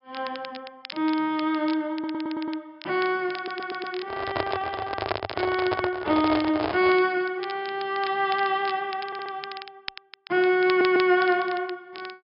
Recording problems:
treble cut off; nothing above 5.5 kHz
crackle; vinyl, SNR 16 dB
audio stuttering; 4 times, first at 2 s
handling noise; from 4 to 7 s; peak +3 dB vs average level

